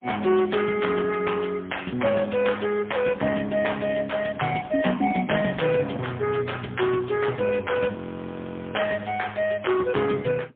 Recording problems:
phone line; 150 Hz to 3.4 kHz, AMR-NB, then MP3
frozen audio; at 8 s for 1 s

